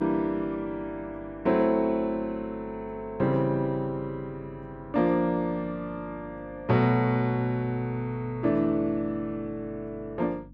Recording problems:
hum; 50 Hz, harmonics up to 300 Hz, SNR 21 dB

